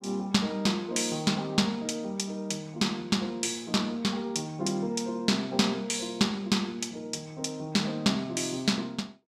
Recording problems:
none

